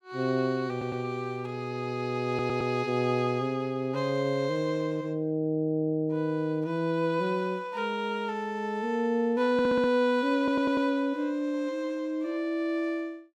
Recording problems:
stutter; 4 times, first at 0.5 s

